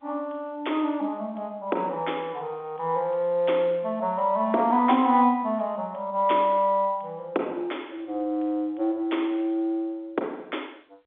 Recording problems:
telephone audio; 260 Hz to 3.5 kHz, G.711

